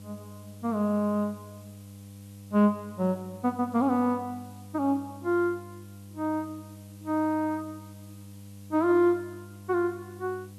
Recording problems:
hum; 50 Hz, harmonics up to 800 Hz, SNR 18 dB
background hiss; slope +2 dB per octave, SNR 28 dB

